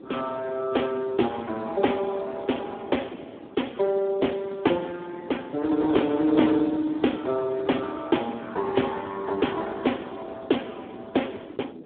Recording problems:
phone line; 260 Hz to 3.5 kHz, Speex
wind on the microphone; below 420 Hz, SNR 17 dB

